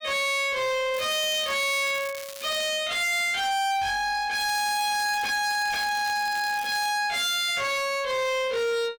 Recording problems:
distortion; hard clipping, signal-to-distortion ratio 6 dB
crackle; from 1 to 2.5 s and from 4.5 to 7 s; loose cable, SNR 15 dB

